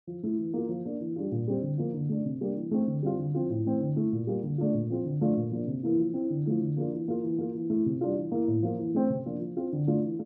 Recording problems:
none

